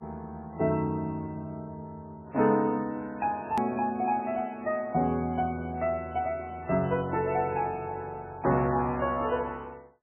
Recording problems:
lossy codec; MP3, log-spectral distance 2 dB, nothing above 13.1 kHz
hard cut with a click; at 3.5 s

